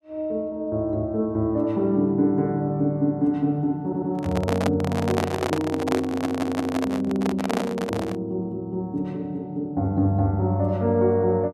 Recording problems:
stutter; at 4 s and at 6 s
microphone handling noise; from 4 to 8 s; peak +3 dB vs average level

